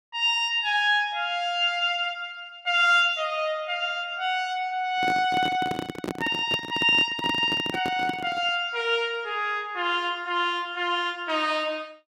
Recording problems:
microphone handling noise; from 5 to 8.5 s; peak -3 dB vs average level

